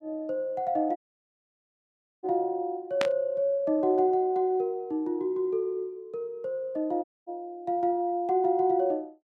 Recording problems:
dropout; at 1 s for 1.5 s and at 7 s
static burst; at 3 s; peak +2 dB vs average level

